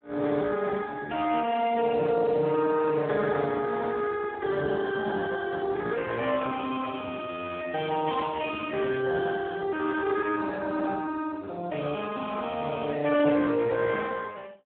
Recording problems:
telephone audio; 220 Hz to 2.1 kHz, Speex

